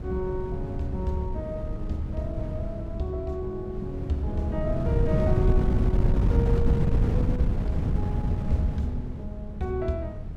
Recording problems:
wind on the microphone; below 140 Hz, SNR -4 dB

